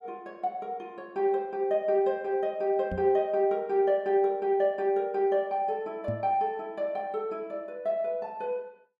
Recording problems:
microphone thump; at 3 s and at 6 s; peak -3 dB vs average level

